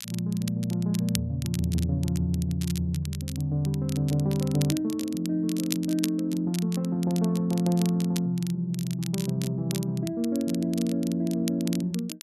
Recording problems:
crackling; vinyl, SNR 13 dB

